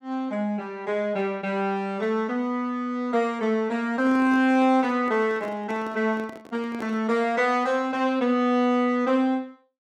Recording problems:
microphone handling noise; from 4 to 7 s; peak -8 dB vs average level

